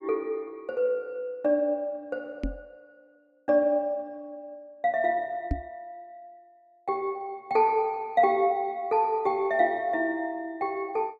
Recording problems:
microphone thump; at 2.5 s and at 5.5 s; peak +2 dB vs average level

